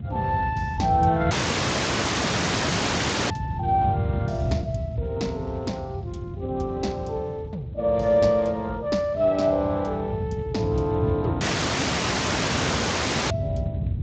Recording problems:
codec artefacts; Speex, log-spectral distance 6 dB
wind on the microphone; below 150 Hz, SNR 5 dB
audio cutting out; at 1.5 s for 2 s and at 11 s for 2 s

